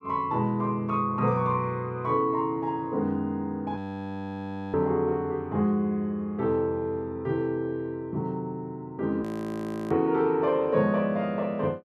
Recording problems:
audio freezing; at 4 s for 1 s and at 9 s for 0.5 s

